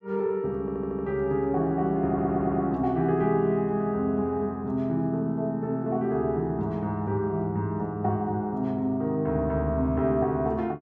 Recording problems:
audio stuttering; at 0.5 s and at 2 s

